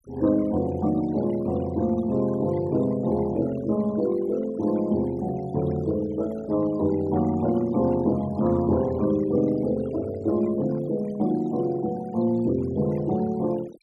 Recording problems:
denoising artefacts; signal-to-artefact ratio 20 dB

